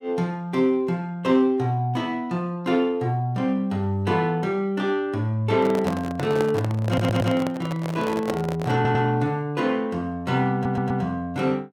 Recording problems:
microphone handling noise; from 5.5 to 9 s; peak 0 dB vs average level
stutter; at 7 s, at 9 s and at 11 s

